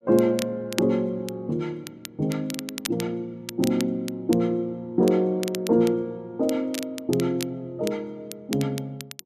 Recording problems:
crackle; vinyl, SNR 13 dB

